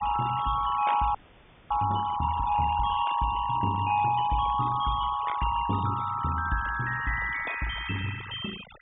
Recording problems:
treble cut off; nothing above 3.6 kHz
noise reduction artefacts; signal-to-artefact ratio 15 dB
frozen audio; at 1 s for 0.5 s

